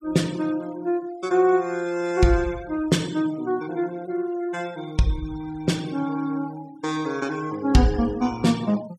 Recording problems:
denoising artefacts; signal-to-artefact ratio 20 dB

